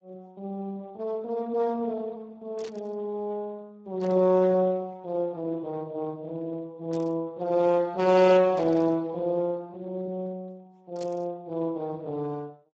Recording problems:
lossy compression; Speex, log-spectral distance 2 dB, nothing above 7.3 kHz
burst of static; 5 times, first at 2.5 s; peak -12 dB vs average level

